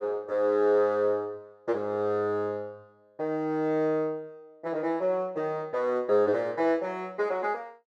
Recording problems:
none

